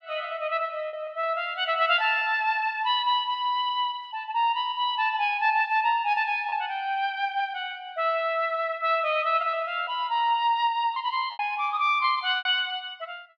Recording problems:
lost packets; 3% of the sound replaced, filled with repeated pitch periods

